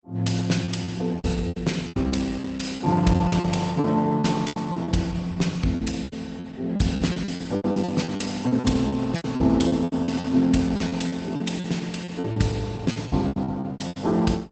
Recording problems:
codec artefacts; Opus, log-spectral distance 4 dB, nothing above 8 kHz
lost packets; 18% of the sound replaced, filled with repeated pitch periods

